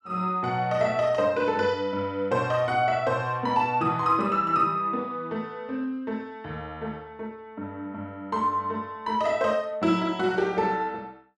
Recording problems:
none

